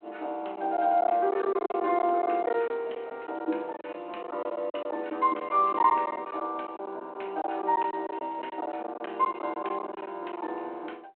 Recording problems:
phone line; 320 Hz to 3.4 kHz, G.726
lost packets; 11% of the sound replaced, filled with silence

